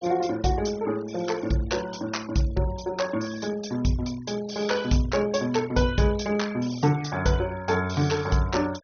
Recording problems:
low-pass filter; nothing above 6.3 kHz
denoising artefacts; signal-to-artefact ratio 18 dB

